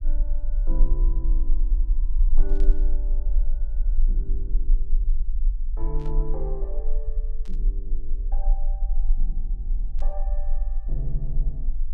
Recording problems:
low-frequency rumble; below 34 Hz, strongest tone 18 Hz, SNR -13 dB
static burst; 4 times, first at 2.5 s; peak -8 dB vs average level

